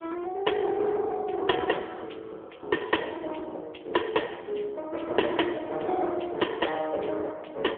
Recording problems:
telephone audio; 260 Hz to 3.4 kHz, AMR-NB

